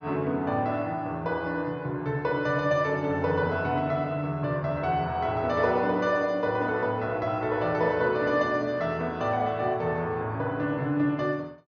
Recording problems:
treble cut off; nothing above 6.4 kHz

